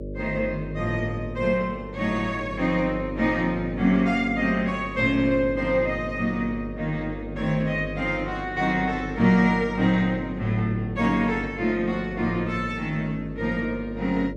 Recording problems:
hum; 50 Hz, harmonics up to 600 Hz, SNR 11 dB

